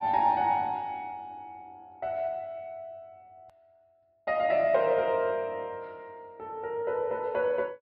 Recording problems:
treble missing; nothing above 5.5 kHz
hard cut with a click; at 3.5 s

